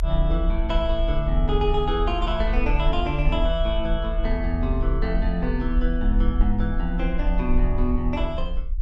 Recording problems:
low-frequency rumble; below 48 Hz, strongest tone 36 Hz, SNR 1 dB

